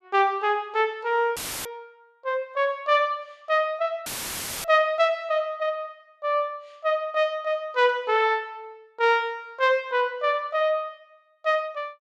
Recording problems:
dropout; at 1.5 s and at 4 s for 0.5 s; filled with static

